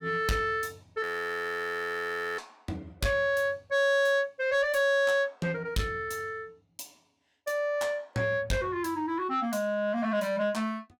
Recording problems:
distortion; soft clipping, signal-to-distortion ratio 11 dB
frozen audio; at 1 s for 1.5 s

